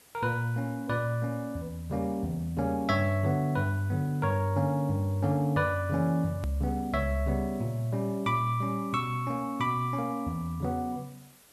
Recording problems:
background hiss; slope -2 dB per octave, SNR 25 dB
hard cut with a click; at 6.5 s

